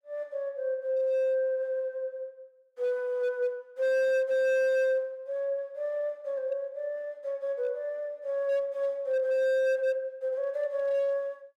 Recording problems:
distorted audio; hard clipping, signal-to-distortion ratio 11 dB

